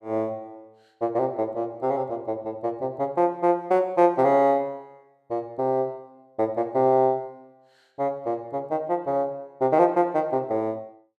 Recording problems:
none

